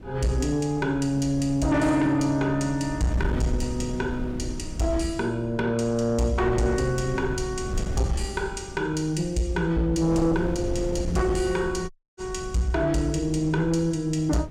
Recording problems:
distortion; soft clipping, signal-to-distortion ratio 10 dB
wind on the microphone; below 180 Hz, SNR 10 dB
audio cutting out; at 12 s

